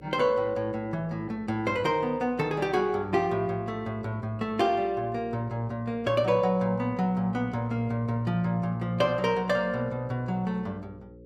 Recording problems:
hum; 60 Hz, harmonics up to 540 Hz, SNR 21 dB

